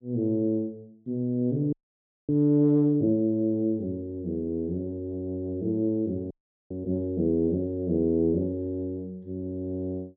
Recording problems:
frozen audio; at 1.5 s for 0.5 s and at 6.5 s

